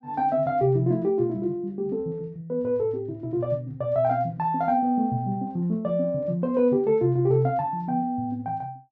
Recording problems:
none

